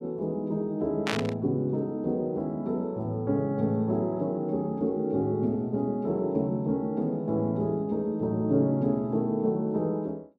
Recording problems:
static burst; at 1 s; peak +3 dB vs average level

